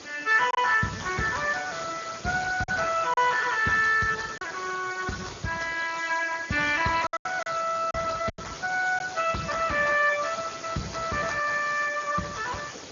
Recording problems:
treble cut off; nothing above 6.9 kHz
lossy codec; Speex, log-spectral distance 12 dB
background hiss; SNR 14 dB
lost packets; 3% of the sound replaced, filled with silence

